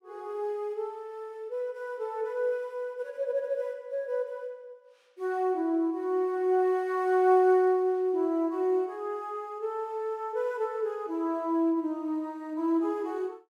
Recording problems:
none

